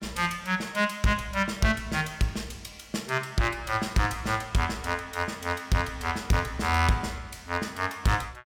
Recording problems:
distortion; hard clipping, signal-to-distortion ratio 11 dB

